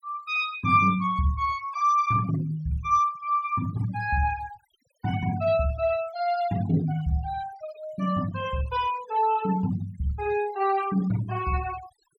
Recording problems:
denoising artefacts; signal-to-artefact ratio 19 dB

